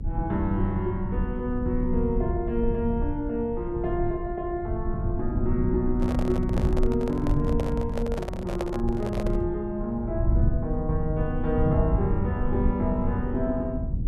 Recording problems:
rumble; below 110 Hz, SNR 2 dB
handling noise; from 6 to 9.5 s; peak +1 dB vs average level

